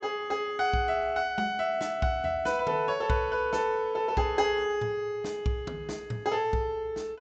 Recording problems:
low-pass filter; nothing above 8 kHz

